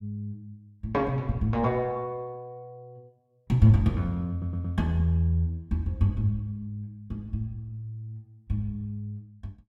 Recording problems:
audio stuttering; at 4.5 s

